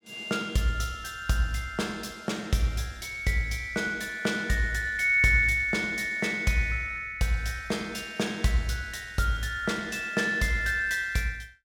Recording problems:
none

